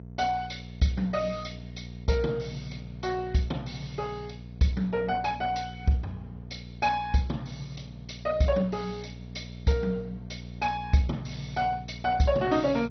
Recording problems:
codec artefacts; MP2, log-spectral distance 4 dB, nothing above 6 kHz
hum; 60 Hz, harmonics up to 720 Hz, SNR 13 dB

